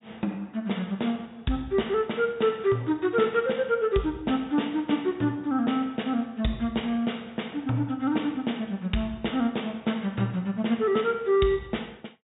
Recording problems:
treble cut off; nothing above 4 kHz

